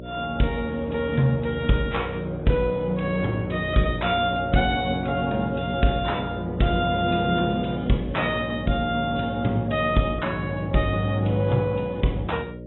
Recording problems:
low-pass filter; nothing above 3.3 kHz
lossy codec; AAC, log-spectral distance 3 dB
hum; 60 Hz, harmonics up to 600 Hz, SNR 10 dB

